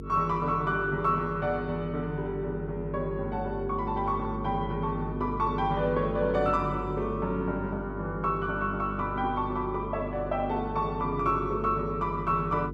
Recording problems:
mains hum; 50 Hz, harmonics up to 450 Hz, SNR 8 dB

